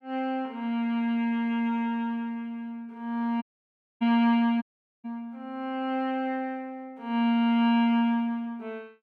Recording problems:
dropout; at 3.5 s for 0.5 s and at 4.5 s

